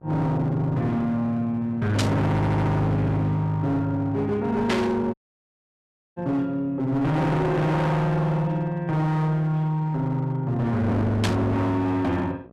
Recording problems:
distortion; hard clipping, signal-to-distortion ratio 7 dB
hum; 60 Hz, harmonics up to 1.4 kHz, SNR 26 dB
static burst; at 2 s, at 4.5 s and at 11 s; peak +2 dB vs average level
stutter; at 2.5 s
audio cutting out; at 5 s for 1 s

